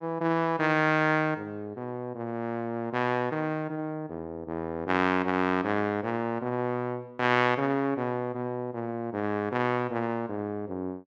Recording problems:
none

